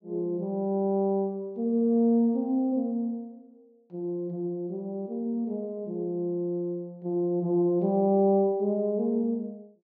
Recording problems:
none

